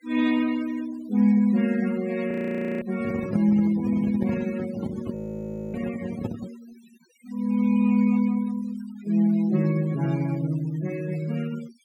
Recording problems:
denoising artefacts; signal-to-artefact ratio 18 dB
frozen audio; at 2.5 s for 0.5 s and at 5 s for 0.5 s
handling noise; from 3 to 6.5 s; peak -1 dB vs average level

